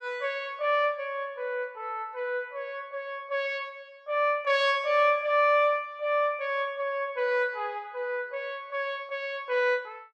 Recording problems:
none

